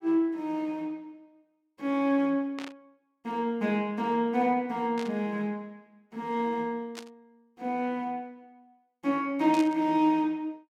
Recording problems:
static burst; 4 times, first at 2.5 s; peak -7 dB vs average level

